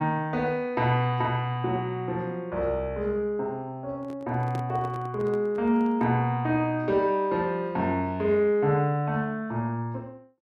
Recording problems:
handling noise; from 4 to 6 s; peak -6 dB vs average level

